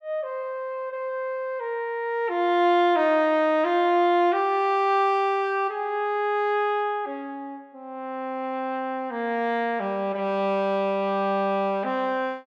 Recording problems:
none

